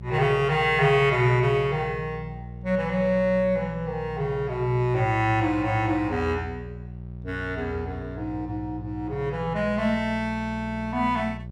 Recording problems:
hum; 60 Hz, harmonics up to 600 Hz, SNR 13 dB

